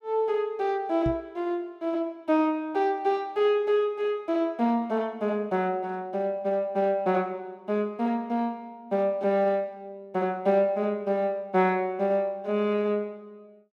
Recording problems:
microphone thump; at 1 s; peak -1 dB vs average level

